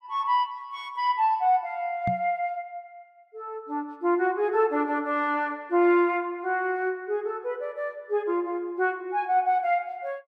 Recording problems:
knock on the microphone; at 2 s; peak -1 dB vs average level

